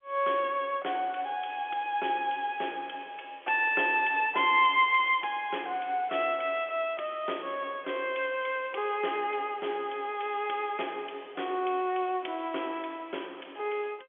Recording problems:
telephone audio; 240 Hz to 3.4 kHz, G.711

